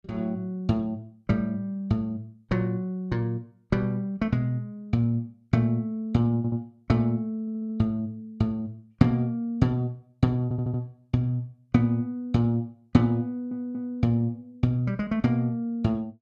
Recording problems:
audio stuttering; 4 times, first at 6.5 s

